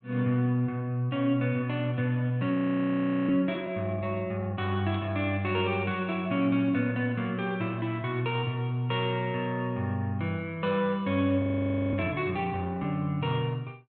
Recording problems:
treble missing; nothing above 4 kHz
frozen audio; at 2.5 s for 1 s and at 11 s for 0.5 s
static burst; at 5 s; peak -15 dB vs average level

